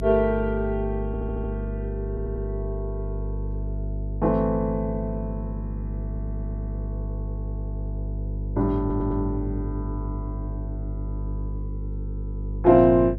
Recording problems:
mains hum; 50 Hz, harmonics up to 500 Hz, SNR 6 dB
audio stuttering; 4 times, first at 1 s

